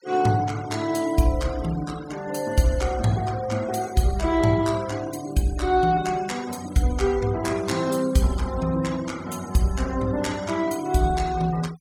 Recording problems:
denoising artefacts; signal-to-artefact ratio 18 dB

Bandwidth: 17 kHz